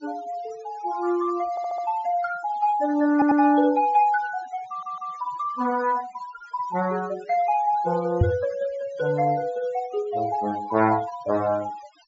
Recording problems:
low-pass filter; nothing above 7.4 kHz
noise reduction artefacts; signal-to-artefact ratio 21 dB
audio stuttering; at 1.5 s, at 3 s and at 4.5 s
microphone thump; at 8 s; peak +8 dB vs average level

